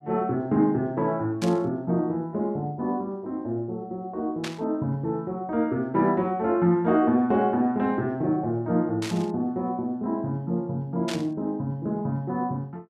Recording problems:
static burst; 4 times, first at 1.5 s; peak -3 dB vs average level

